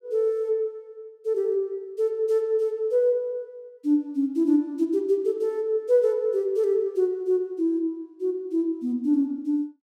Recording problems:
none

